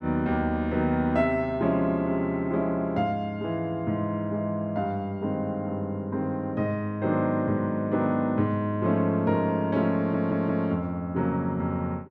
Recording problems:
stutter; at 10 s

